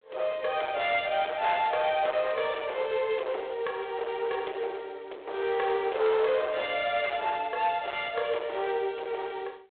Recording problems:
telephone audio; 320 Hz to 3.9 kHz, G.726
distortion; hard clipping, uneven, signal-to-distortion ratio 10 dB

